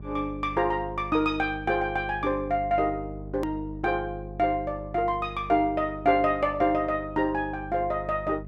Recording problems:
hum; 50 Hz, harmonics up to 600 Hz, SNR 14 dB
hard cut with a click; at 3.5 s

